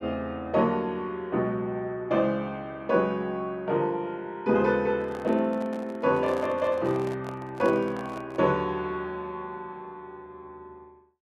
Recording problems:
handling noise; from 5 to 8.5 s; peak -7 dB vs average level

